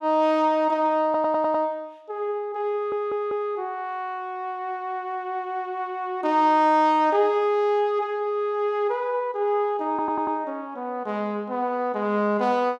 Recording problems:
stutter; at 1 s, at 2.5 s and at 10 s

